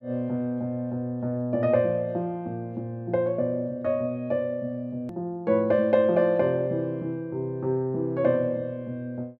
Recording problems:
click at an edit; at 5 s

